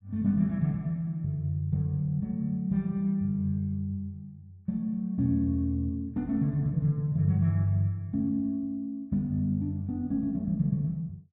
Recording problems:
low-pass filter; nothing above 4.2 kHz

